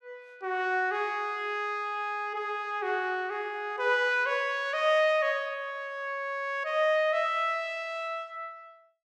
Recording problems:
none

